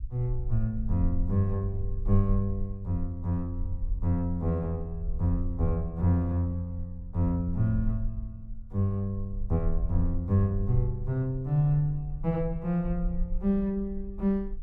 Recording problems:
low-frequency rumble; below 48 Hz, strongest tone 20 Hz, SNR 8 dB

